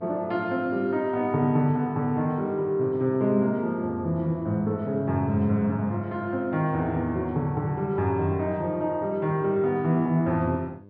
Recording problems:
treble cut off; nothing above 5.5 kHz
hum; 50 Hz, harmonics up to 1 kHz, SNR 25 dB

